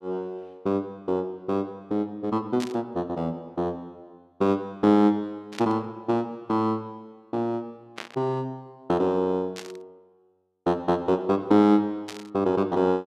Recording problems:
static burst; 5 times, first at 2.5 s; peak -5 dB vs average level

